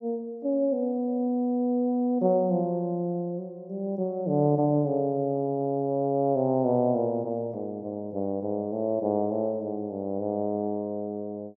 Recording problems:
none

